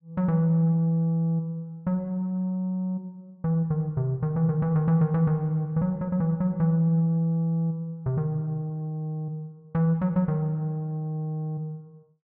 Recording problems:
none

